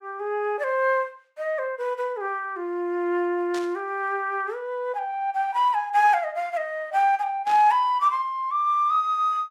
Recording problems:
burst of static; at 3.5 s and at 7.5 s; peak -10 dB vs average level

